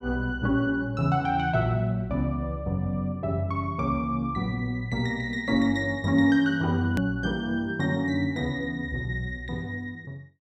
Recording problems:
hard cut with a click; at 7 s

